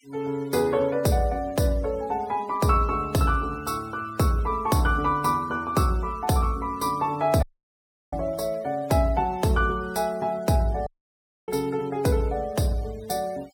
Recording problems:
denoising artefacts; signal-to-artefact ratio 24 dB
audio cutting out; at 7.5 s for 0.5 s and at 11 s for 0.5 s

